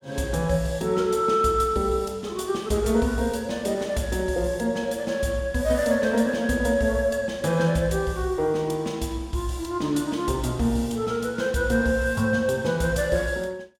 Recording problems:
none

